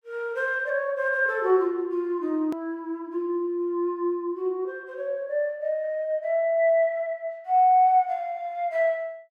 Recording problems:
click at an edit; at 2.5 s

